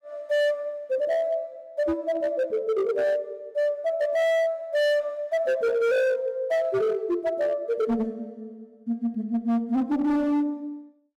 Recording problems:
distortion; hard clipping, signal-to-distortion ratio 8 dB

